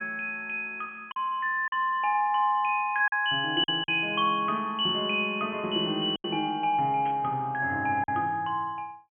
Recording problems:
treble cut off; nothing above 3.3 kHz
lost packets; 4% of the sound replaced, filled with silence
burst of static; at 7 s; peak -14 dB vs average level

